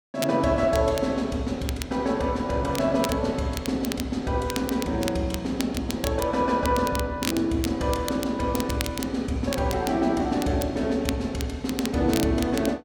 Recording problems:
crackling; vinyl, SNR 11 dB

